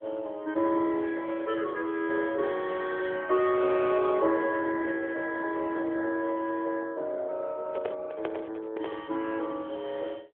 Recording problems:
phone line; 240 Hz to 3.7 kHz, AMR-NB
handling noise; from 7.5 to 9 s; peak -1 dB vs average level

